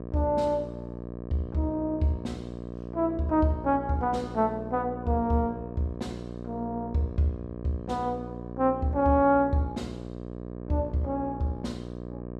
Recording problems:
hum; 60 Hz, harmonics up to 1.3 kHz, SNR 10 dB

